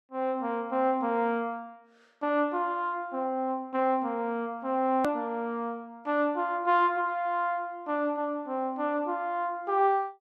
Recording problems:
hard cut with a click; at 5 s

